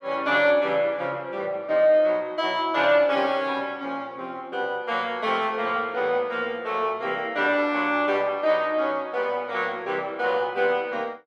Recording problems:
none

